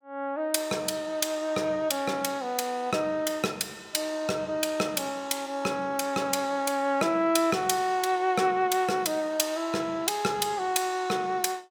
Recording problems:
none

